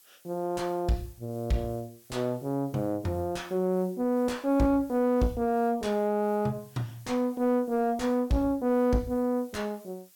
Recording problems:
distortion; soft clipping, signal-to-distortion ratio 8 dB
background hiss; slope +2 dB per octave, SNR 27 dB

